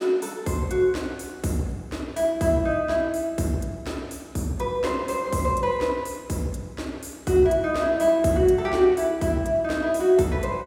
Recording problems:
none

